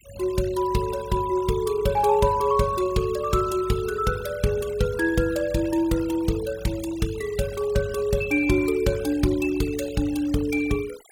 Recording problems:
noise reduction artefacts; signal-to-artefact ratio 18 dB

